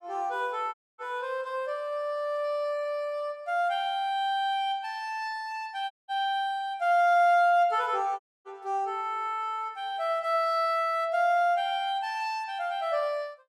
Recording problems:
audio cutting out; at 0.5 s, at 6 s and at 8 s

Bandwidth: 14.5 kHz